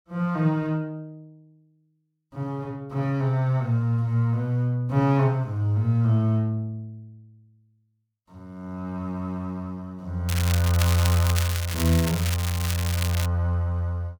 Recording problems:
crackling; from 10 to 13 s; loose cable, SNR 7 dB

